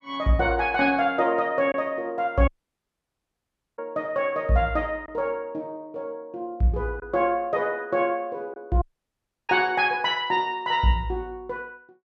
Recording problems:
lost packets; 1% of the sound replaced, filled with silence
audio cutting out; at 2.5 s for 1.5 s and at 9 s for 0.5 s

